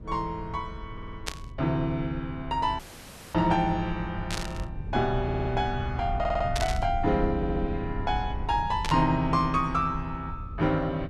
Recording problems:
low-frequency rumble; below 100 Hz, SNR 9 dB
stutter; 4 times, first at 1 s
burst of static; 4 times, first at 1.5 s; peak +1 dB vs average level
audio cutting out; at 3 s for 0.5 s

